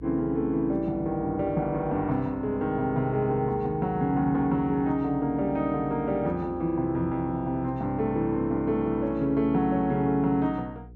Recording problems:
electrical hum; 60 Hz, harmonics up to 480 Hz, SNR 19 dB

